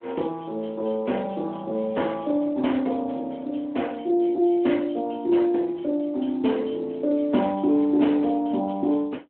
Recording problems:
telephone audio; 220 Hz to 3.2 kHz, Speex

